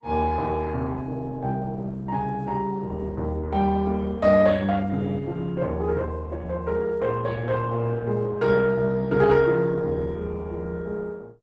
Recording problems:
lossy codec; Opus, log-spectral distance 3 dB, nothing above 7.6 kHz

